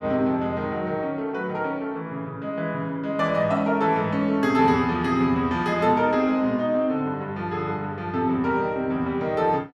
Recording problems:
none

